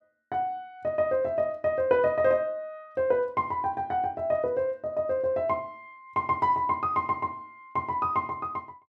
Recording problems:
none

